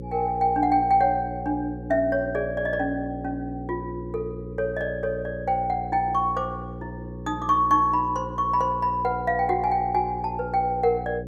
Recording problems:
electrical hum; 60 Hz, harmonics up to 540 Hz, SNR 12 dB

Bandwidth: 14.5 kHz